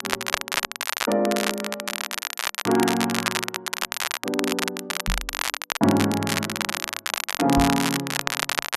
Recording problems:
crackling; vinyl, SNR 2 dB
microphone thump; at 5 s and at 7.5 s; peak 0 dB vs average level

